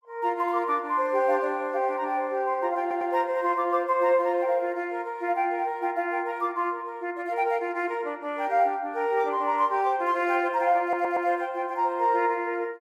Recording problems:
stutter; at 3 s and at 11 s

